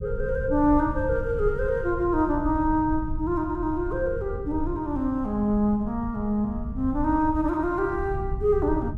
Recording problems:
low-frequency rumble; below 96 Hz, SNR 9 dB

